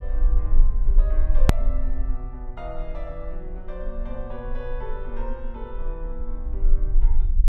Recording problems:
rumble; below 38 Hz, strongest tone 22 Hz, SNR -11 dB
edit click; at 1.5 s

